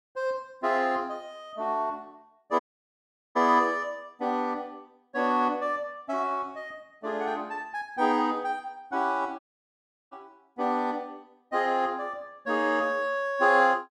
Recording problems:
audio cutting out; at 2.5 s for 1 s and at 9.5 s for 0.5 s

